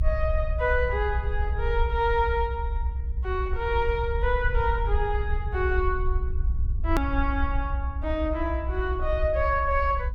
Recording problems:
low-frequency rumble; below 68 Hz, SNR 2 dB
hard cut with a click; at 7 s

